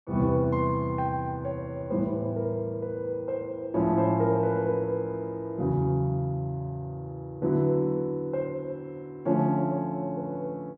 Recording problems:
none

